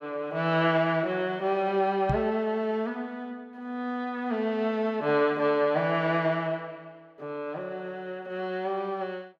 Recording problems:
microphone bump; at 2 s; peak +3 dB vs average level

